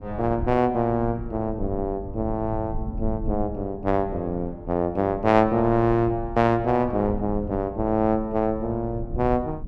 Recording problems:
rumble; below 90 Hz, SNR 13 dB

